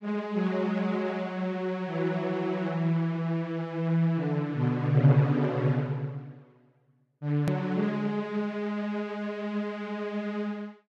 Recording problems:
hard cut with a click; at 7.5 s

